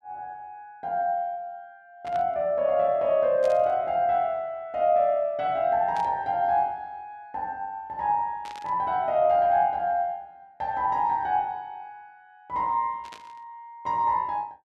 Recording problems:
static burst; 5 times, first at 2 s; peak -14 dB vs average level

